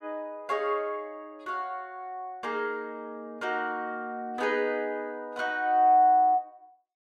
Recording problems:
none

